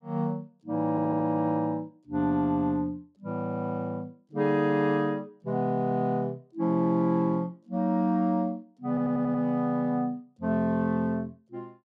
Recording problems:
stutter; at 1 s and at 9 s

